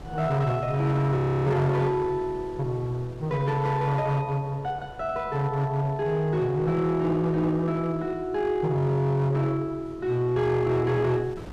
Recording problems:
distortion; hard clipping, uneven, signal-to-distortion ratio 10 dB
wind on the microphone; below 490 Hz, SNR 20 dB
audio freezing; at 1 s

